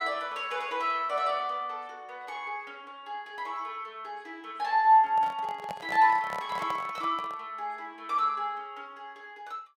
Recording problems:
handling noise; from 5 to 7.5 s; peak -6 dB vs average level

